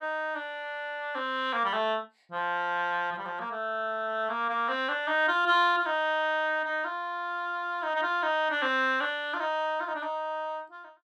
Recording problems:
none

